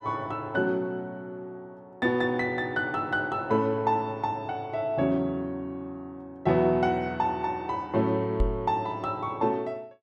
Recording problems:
microphone thump; at 8.5 s; peak +5 dB vs average level

